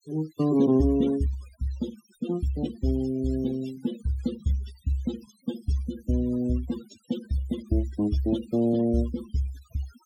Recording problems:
denoising artefacts; signal-to-artefact ratio 17 dB

